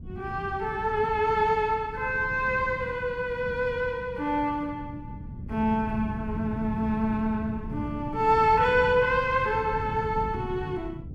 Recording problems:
wind noise; below 190 Hz, SNR 11 dB

